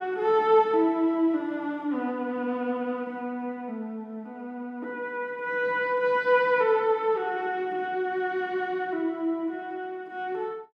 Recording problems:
none

